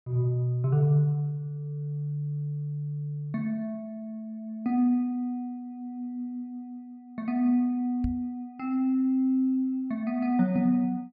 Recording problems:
knock on the microphone; at 8 s; peak 0 dB vs average level

